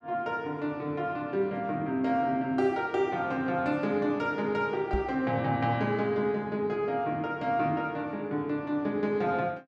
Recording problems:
microphone bump; at 5 s; peak +1 dB vs average level

